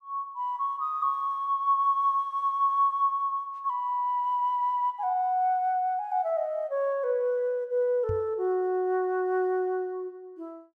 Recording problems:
microphone bump; at 8 s; peak -4 dB vs average level

